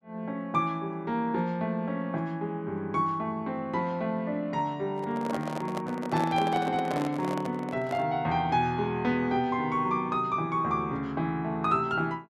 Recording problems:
handling noise; from 5 to 8 s; peak -2 dB vs average level

